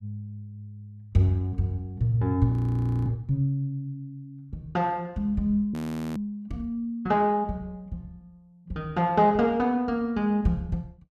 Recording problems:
audio freezing; at 2.5 s for 0.5 s and at 5.5 s

